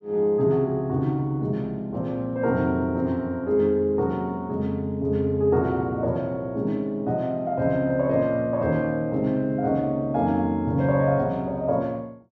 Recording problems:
none

